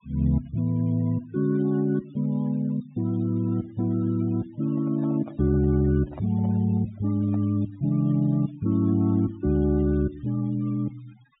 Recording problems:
treble missing; nothing above 4 kHz
noise reduction artefacts; signal-to-artefact ratio 26 dB
microphone handling noise; from 4.5 to 7.5 s; peak -12 dB vs average level

